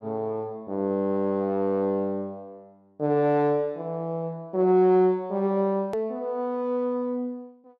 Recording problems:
edit click; at 6 s

